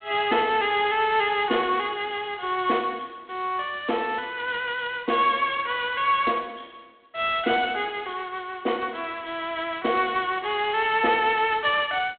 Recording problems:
telephone audio; 240 Hz to 3.4 kHz, G.726

